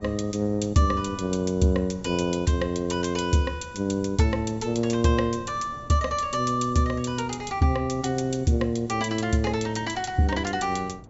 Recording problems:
low-pass filter; nothing above 8 kHz
wind on the microphone; below 350 Hz, SNR 21 dB

